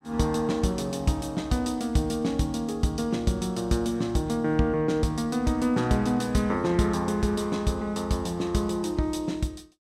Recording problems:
none

